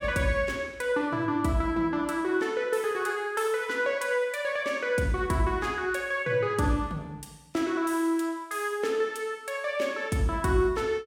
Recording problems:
none

